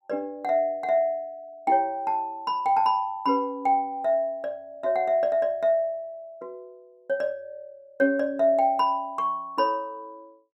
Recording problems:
none

